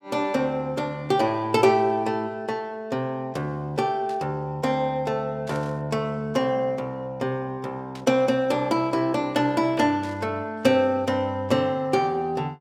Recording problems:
static burst; 4 times, first at 4 s; peak -14 dB vs average level

